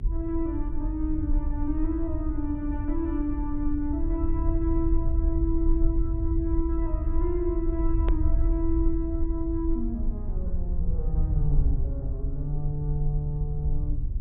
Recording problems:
treble cut off; nothing above 4 kHz
mains hum; 50 Hz, harmonics up to 400 Hz, SNR 15 dB
low-frequency rumble; below 64 Hz, SNR -2 dB
edit click; at 8 s

